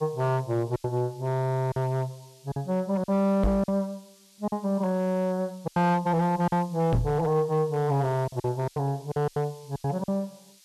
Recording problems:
distortion; hard clipping, signal-to-distortion ratio 11 dB
hiss; SNR 26 dB
lost packets; 8% of the sound replaced, filled with silence
knock on the microphone; at 3.5 s and at 7 s; peak +5 dB vs average level

